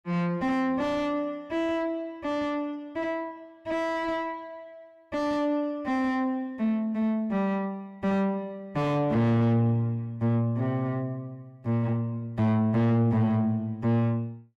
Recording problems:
distorted audio; soft clipping, signal-to-distortion ratio 6 dB

